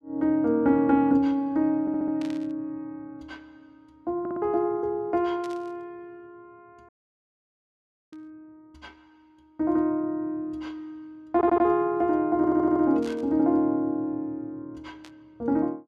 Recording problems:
audio stuttering; 4 times, first at 2 s
burst of static; 5 times, first at 2 s; peak -15 dB vs average level
audio cutting out; at 7 s for 1 s

